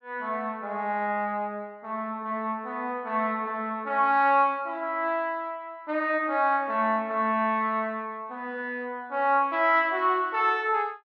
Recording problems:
none

